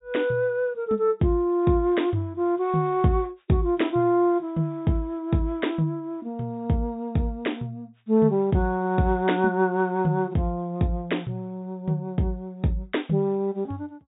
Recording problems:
treble missing; nothing above 4 kHz

